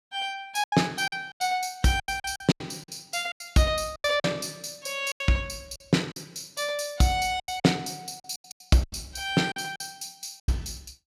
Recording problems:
packet loss; 13% of the sound replaced, filled with silence

